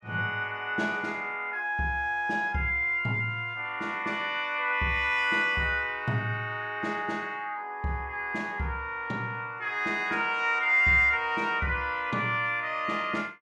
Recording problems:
none

